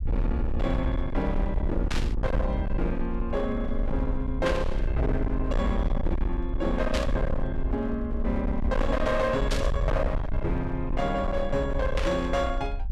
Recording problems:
distorted audio; hard clipping, signal-to-distortion ratio 7 dB
rumble; below 66 Hz, SNR 2 dB
static burst; 5 times, first at 2 s; peak +1 dB vs average level

